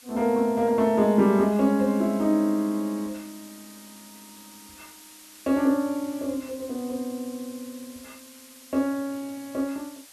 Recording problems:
hiss; slope +2 dB per octave, SNR 21 dB

